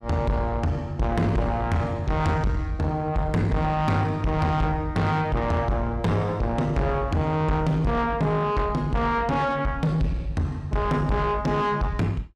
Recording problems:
distorted audio; soft clipping, signal-to-distortion ratio 8 dB

